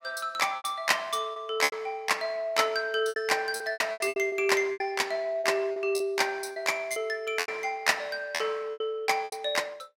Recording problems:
packet loss; 12% of the sound replaced, filled with repeated pitch periods

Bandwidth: 16.5 kHz